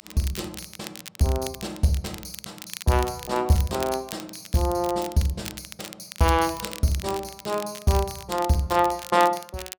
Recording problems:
crackling; vinyl, SNR 14 dB

